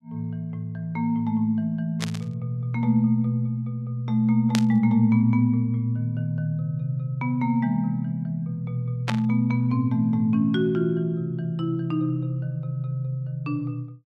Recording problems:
static burst; at 2 s, at 4.5 s and at 9 s; peak +1 dB vs average level

